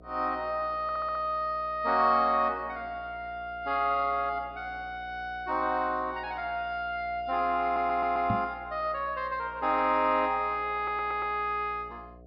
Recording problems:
low-pass filter; nothing above 5.5 kHz
hum; 60 Hz, harmonics up to 720 Hz, SNR 22 dB
audio stuttering; at 1 s, at 7.5 s and at 11 s
knock on the microphone; at 8.5 s; peak +2 dB vs average level

